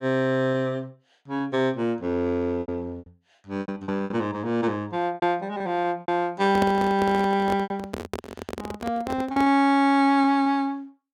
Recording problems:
lost packets; 9% of the sound replaced, filled with repeated pitch periods
microphone handling noise; from 6.5 to 9.5 s; peak 0 dB vs average level

